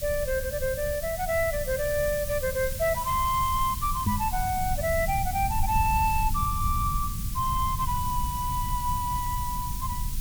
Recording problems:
hiss; slope +4 dB per octave, SNR 8 dB
rumble; below 100 Hz, SNR 6 dB
microphone bump; at 4 s; peak +5 dB vs average level

